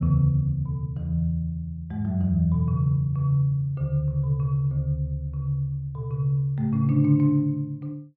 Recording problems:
none

